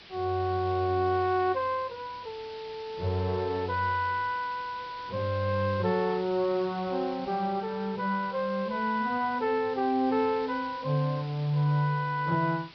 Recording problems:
treble cut off; nothing above 5.5 kHz
background hiss; SNR 18 dB

